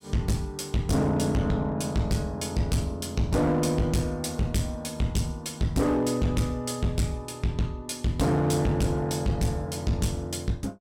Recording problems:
distorted audio; hard clipping, uneven, signal-to-distortion ratio 6 dB

